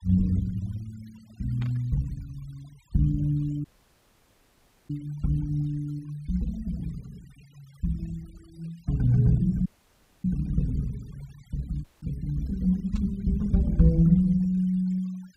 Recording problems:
noise reduction artefacts; signal-to-artefact ratio 27 dB
static burst; at 1.5 s and at 13 s; peak -15 dB vs average level
audio cutting out; at 3.5 s for 1 s, at 9.5 s for 0.5 s and at 12 s

